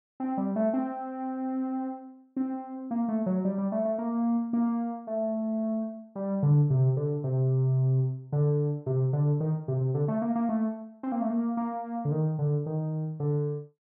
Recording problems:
none

